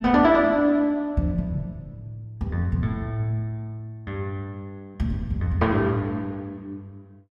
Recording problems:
none

